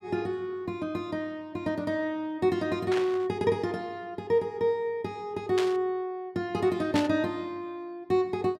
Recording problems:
burst of static; at 3 s, at 5.5 s and at 7 s; peak 0 dB vs average level

